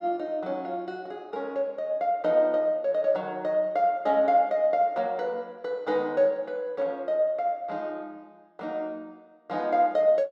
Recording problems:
none

